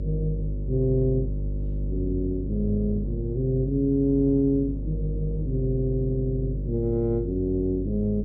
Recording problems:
treble missing; nothing above 5.1 kHz
hum; 50 Hz, harmonics up to 550 Hz, SNR 5 dB
wind noise; below 210 Hz, SNR 19 dB

